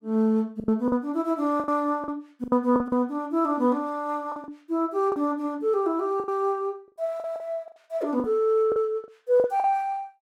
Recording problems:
lost packets; 10% of the sound replaced, filled with the last packet

